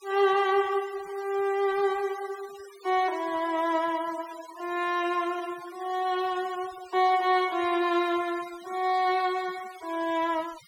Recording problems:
noise reduction artefacts; signal-to-artefact ratio 19 dB

